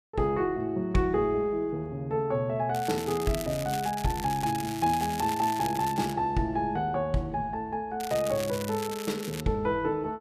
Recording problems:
crackling; from 2.5 to 6 s and from 8 to 9.5 s; loose cable, SNR 11 dB

